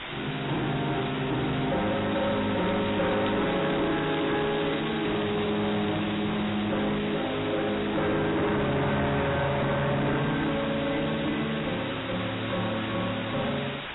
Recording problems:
codec artefacts; AAC, log-spectral distance 17 dB, nothing above 3.8 kHz
distortion; soft clipping, signal-to-distortion ratio 5 dB
hiss; SNR 3 dB
crackle; from 2 to 3.5 s and from 3.5 to 6 s; loose cable, SNR 23 dB

